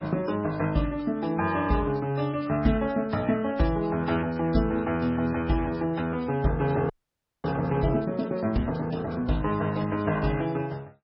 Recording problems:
lossy codec; MP3, then MP3, log-spectral distance 3 dB, nothing above 5.3 kHz
frozen audio; at 7 s for 0.5 s

